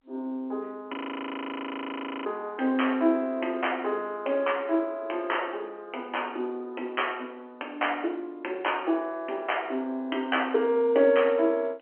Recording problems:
telephone audio; 220 Hz to 3.2 kHz, G.711
frozen audio; at 1 s for 1.5 s

